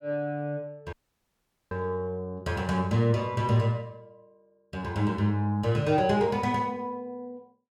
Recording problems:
audio cutting out; at 1 s for 1 s

